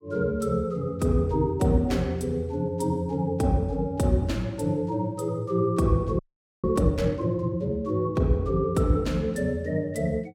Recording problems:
audio freezing; at 6 s

